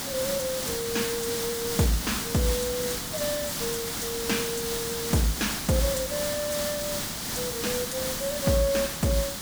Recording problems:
background hiss; slope -1 dB per octave, SNR 0 dB

